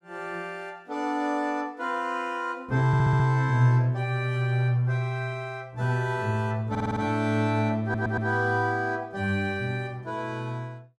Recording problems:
stutter; at 3 s, at 6.5 s and at 8 s

